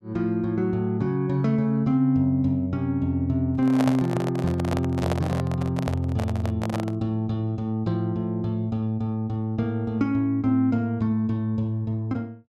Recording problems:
microphone handling noise; from 3.5 to 7 s; peak 0 dB vs average level

